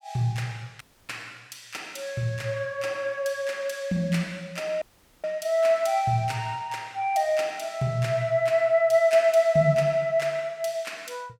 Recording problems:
audio cutting out; at 1 s and at 5 s

